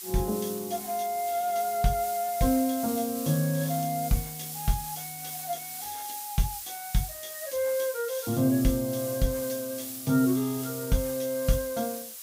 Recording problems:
hiss; slope +4 dB per octave, SNR 8 dB

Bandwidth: 15.5 kHz